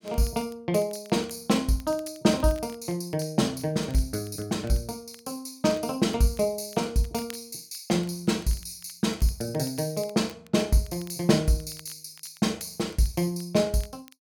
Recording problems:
crackling; vinyl, SNR 25 dB

